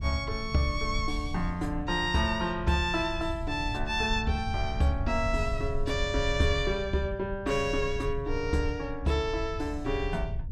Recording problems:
rumble; below 86 Hz, SNR 7 dB

